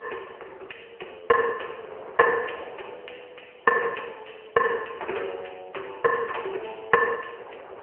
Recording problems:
telephone audio; 340 Hz to 3.3 kHz, AMR-NB
wind on the microphone; below 1 kHz, SNR 22 dB

